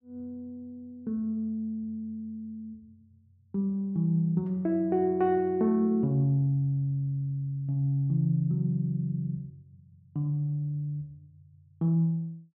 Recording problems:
none

